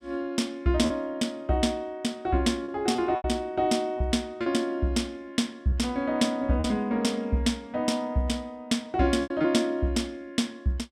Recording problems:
packet loss; 4% of the sound replaced, filled with repeated pitch periods

